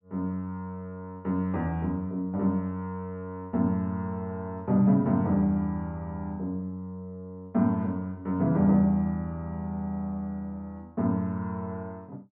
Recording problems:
low-pass filter; nothing above 8 kHz

